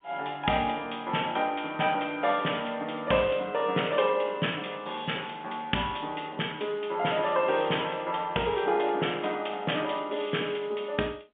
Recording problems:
phone line; 240 Hz to 3.5 kHz, G.711

